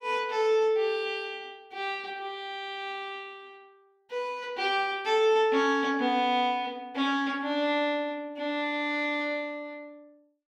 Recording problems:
none

